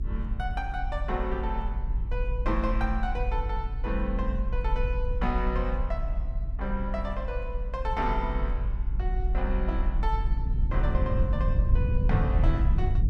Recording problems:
rumble; below 60 Hz, SNR -4 dB

